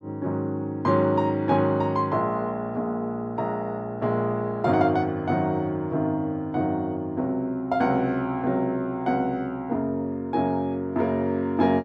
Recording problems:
none

